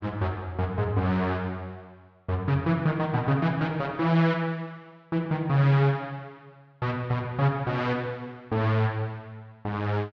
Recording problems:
none

